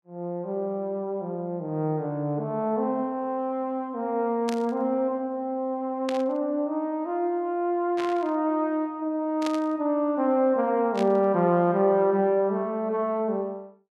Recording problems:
burst of static; 5 times, first at 4.5 s; peak -5 dB vs average level

